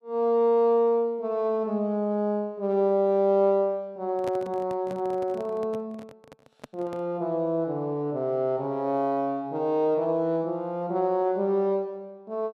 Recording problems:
handling noise; from 4 to 7 s; peak -7 dB vs average level

